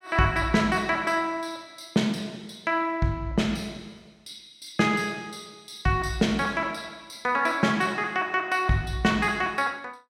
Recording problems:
none

